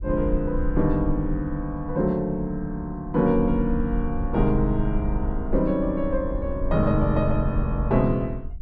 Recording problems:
rumble; below 56 Hz, SNR 7 dB

